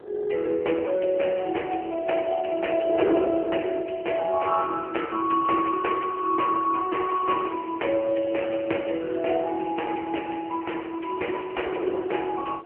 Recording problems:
phone line; 300 Hz to 3 kHz, AMR-NB
wind noise; below 560 Hz, SNR 9 dB

